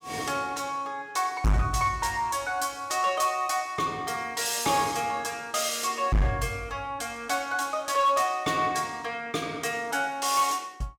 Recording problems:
distorted audio; hard clipping, signal-to-distortion ratio 7 dB

